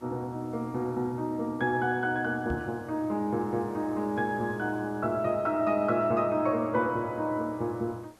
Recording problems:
background hiss; slope -5 dB per octave, SNR 28 dB
microphone bump; at 2.5 s; peak -2 dB vs average level

